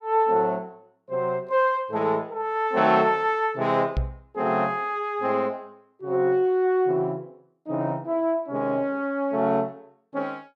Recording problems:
microphone thump; at 4 s; peak +2 dB vs average level

